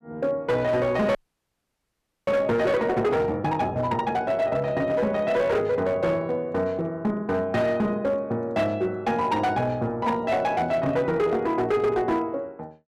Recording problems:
distorted audio; hard clipping, signal-to-distortion ratio 11 dB
frozen audio; at 1 s for 1 s

